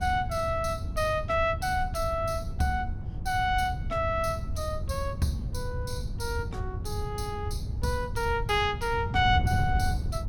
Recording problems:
wind on the microphone; below 110 Hz, SNR 4 dB

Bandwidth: 17 kHz